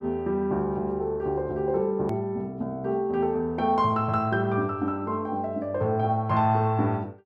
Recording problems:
click at an edit; at 2 s

